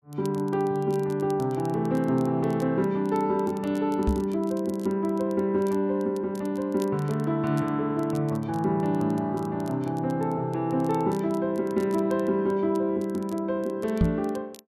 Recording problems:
crackling; vinyl, SNR 26 dB
microphone thump; at 4 s and at 14 s; peak +7 dB vs average level

